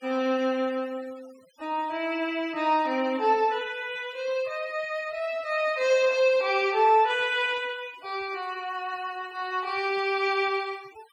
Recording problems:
noise reduction artefacts; signal-to-artefact ratio 24 dB

